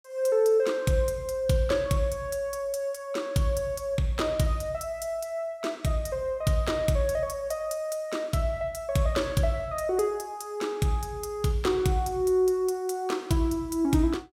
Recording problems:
none

